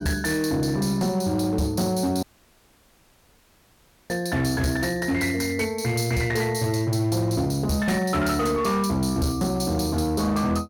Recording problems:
distortion; hard clipping, signal-to-distortion ratio 11 dB
audio cutting out; at 2 s for 2 s

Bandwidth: 17 kHz